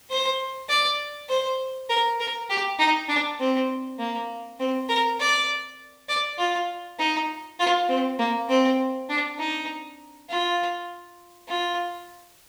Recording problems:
background hiss; slope 0 dB per octave, SNR 30 dB

